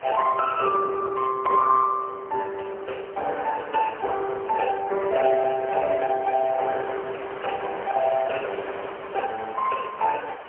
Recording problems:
phone line; 340 Hz to 2.6 kHz, AMR-NB, then MP3
wind noise; below 1.7 kHz, SNR 14 dB

